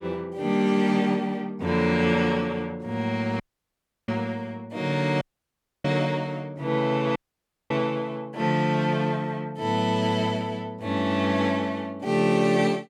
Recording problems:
audio cutting out; at 3.5 s for 0.5 s, at 5 s for 0.5 s and at 7 s for 0.5 s

